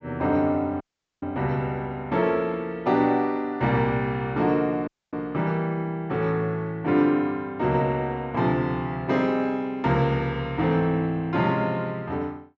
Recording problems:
treble missing; nothing above 8 kHz
audio cutting out; at 1 s and at 5 s

